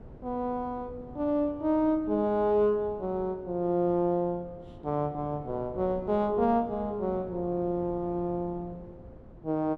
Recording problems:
wind noise; below 360 Hz, SNR 19 dB

